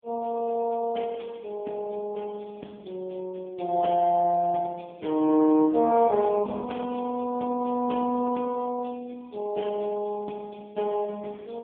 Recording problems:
telephone audio; 170 Hz to 3.3 kHz, AMR-NB

